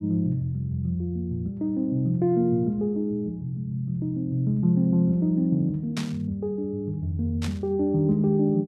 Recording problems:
burst of static; at 6 s and at 7.5 s; peak -5 dB vs average level

